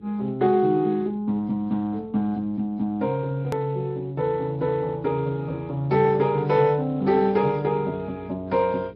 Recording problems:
lossy compression; MP3, then Speex, log-spectral distance 2 dB, nothing above 13.1 kHz
electrical hum; 60 Hz, harmonics up to 420 Hz, SNR 25 dB
hard cut with a click; at 3.5 s

